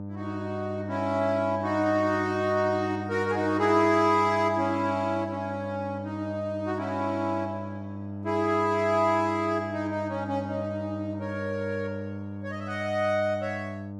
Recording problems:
hum; 50 Hz, harmonics up to 1 kHz, SNR 9 dB

